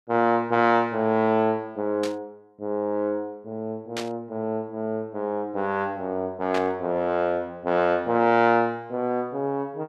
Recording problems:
static burst; at 2 s, at 4 s and at 6.5 s; peak -3 dB vs average level

